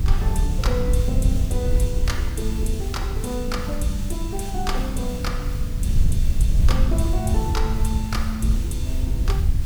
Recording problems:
background hiss; slope 0 dB per octave, SNR 13 dB
low-frequency rumble; below 62 Hz, strongest tone 26 Hz, SNR 4 dB
wind noise; below 82 Hz, SNR -4 dB

